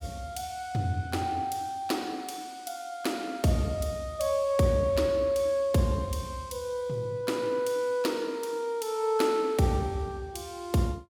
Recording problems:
none

